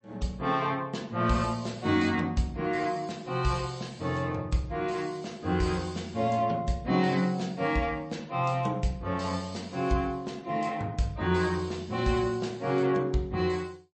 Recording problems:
codec artefacts; MP3, log-spectral distance 3 dB, nothing above 8.2 kHz

